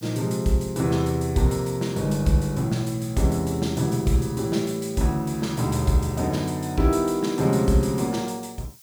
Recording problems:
background hiss; slope +5 dB per octave, SNR 24 dB

